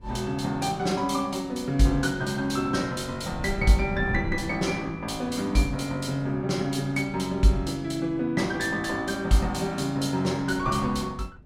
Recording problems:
wind on the microphone; below 160 Hz, SNR 14 dB

